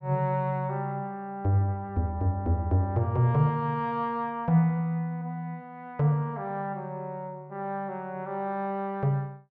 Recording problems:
none

